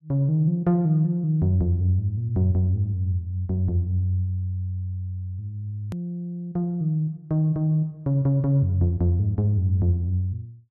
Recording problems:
click at an edit; at 6 s

